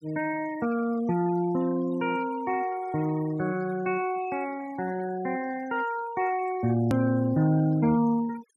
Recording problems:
noise reduction artefacts; signal-to-artefact ratio 20 dB
click at an edit; at 7 s

